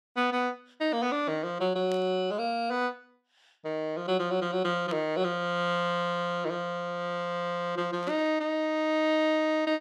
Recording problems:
burst of static; at 2 s, at 5 s and at 8 s; peak -11 dB vs average level

